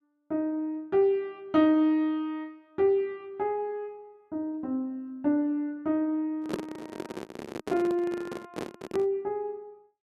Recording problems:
handling noise; from 6.5 to 9 s; peak +1 dB vs average level

